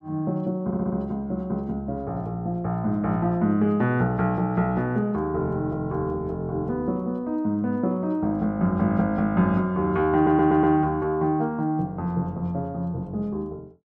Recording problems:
audio stuttering; at 0.5 s and at 10 s

